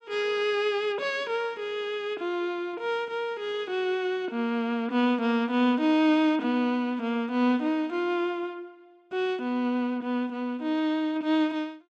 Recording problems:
none

